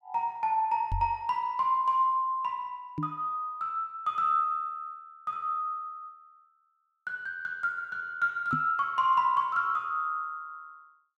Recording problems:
microphone bump; at 1 s, at 3 s and at 8.5 s; peak -1 dB vs average level

